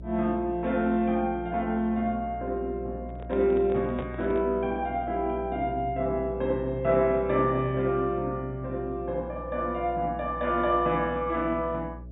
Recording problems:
low-pass filter; nothing above 4 kHz
hum; 60 Hz, harmonics up to 660 Hz, SNR 14 dB
handling noise; from 3 to 4.5 s; peak -5 dB vs average level

